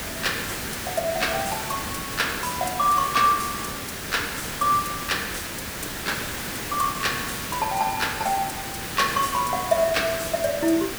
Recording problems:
hiss; slope -2 dB per octave, SNR 5 dB

